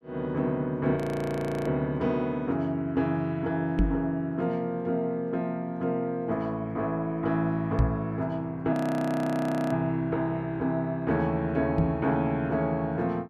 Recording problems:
audio freezing; at 1 s for 0.5 s and at 8.5 s for 1 s
microphone thump; at 4 s, at 8 s and at 12 s; peak +8 dB vs average level

